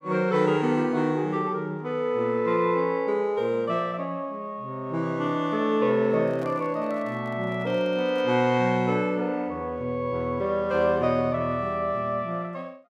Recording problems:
microphone handling noise; from 6 to 8.5 s; peak -12 dB vs average level

